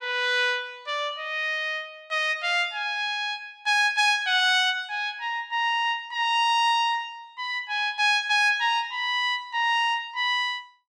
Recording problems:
none

